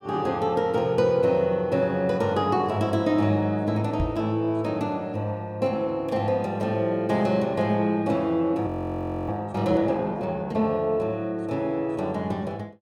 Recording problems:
microphone thump; at 4 s; peak +1 dB vs average level
audio freezing; at 8.5 s for 0.5 s

